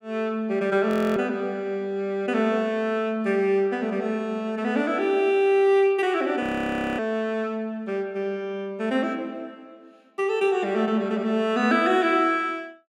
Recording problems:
audio freezing; at 1 s and at 6.5 s for 0.5 s

